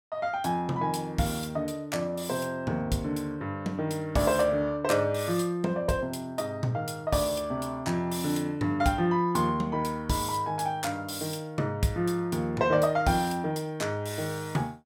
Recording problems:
none

